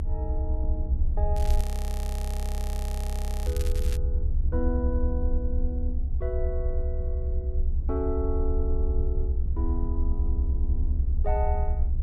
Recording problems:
low-frequency rumble; below 70 Hz, strongest tone 24 Hz, SNR -8 dB
crackle; from 1.5 to 4 s; loose cable, SNR 7 dB
frozen audio; at 1.5 s for 2 s

